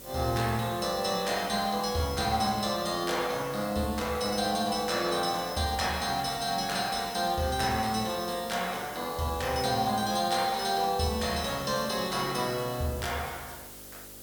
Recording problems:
hum; 50 Hz, harmonics up to 600 Hz, SNR 24 dB
background hiss; slope 0 dB per octave, SNR 15 dB

